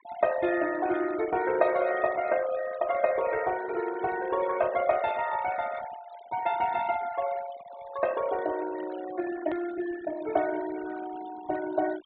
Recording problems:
treble missing; nothing above 4 kHz
noise reduction artefacts; signal-to-artefact ratio 15 dB
click at an edit; at 9.5 s

